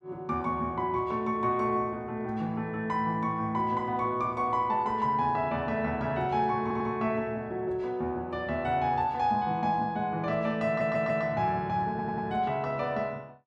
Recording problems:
stutter; at 6.5 s, at 11 s and at 12 s

